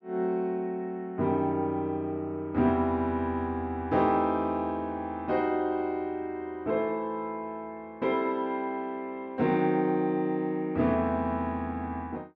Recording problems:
none

